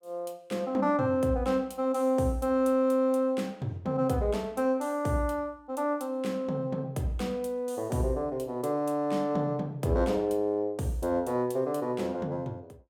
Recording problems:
none

